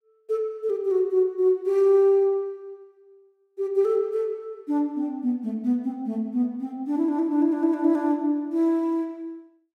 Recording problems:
none

